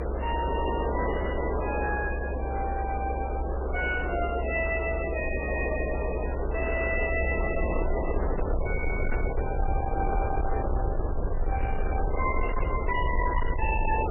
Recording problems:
lossy codec; MP3, log-spectral distance 5 dB, nothing above 2.7 kHz
distortion; soft clipping, signal-to-distortion ratio 11 dB
background hiss; SNR 1 dB
rumble; below 66 Hz, SNR 1 dB

